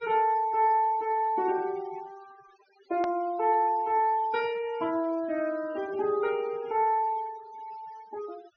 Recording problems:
treble cut off; nothing above 6.3 kHz
noise reduction artefacts; signal-to-artefact ratio 22 dB
click at an edit; at 3 s

